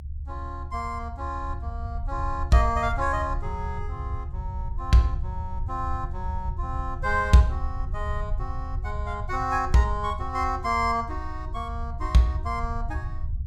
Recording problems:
rumble; below 78 Hz, SNR 7 dB

